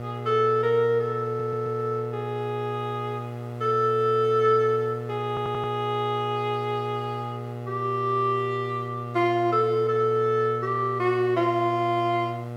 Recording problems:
hum; 60 Hz, harmonics up to 1.4 kHz, SNR 10 dB
hiss; SNR 30 dB
stutter; at 1.5 s and at 5.5 s

